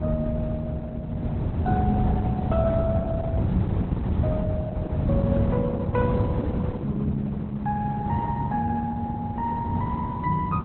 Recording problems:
codec artefacts; Opus, log-spectral distance 2 dB
wind noise; below 180 Hz, SNR -1 dB

